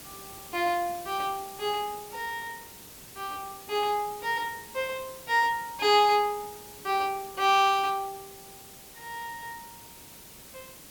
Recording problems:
hiss; slope -2 dB per octave, SNR 16 dB

